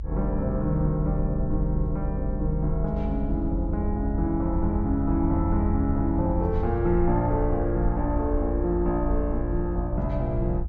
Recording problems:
treble missing; nothing above 8 kHz
low-frequency rumble; below 74 Hz, strongest tone 46 Hz, SNR 4 dB

